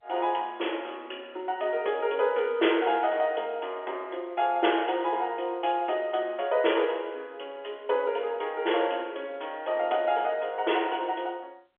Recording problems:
phone line; 300 Hz to 3.4 kHz, G.711

